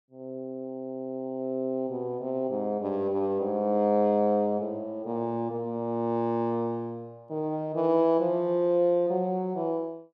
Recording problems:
none

